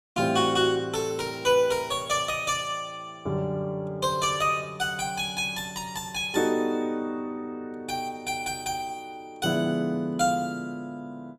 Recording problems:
none

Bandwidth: 14.5 kHz